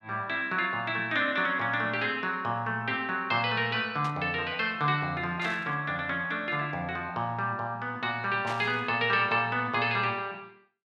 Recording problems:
burst of static; at 4 s, at 5.5 s and at 8.5 s; peak -6 dB vs average level

